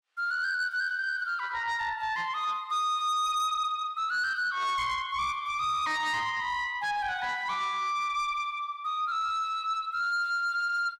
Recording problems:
distortion; soft clipping, signal-to-distortion ratio 11 dB

